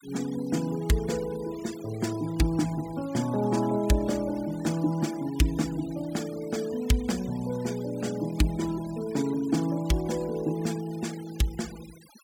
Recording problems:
noise reduction artefacts; signal-to-artefact ratio 18 dB

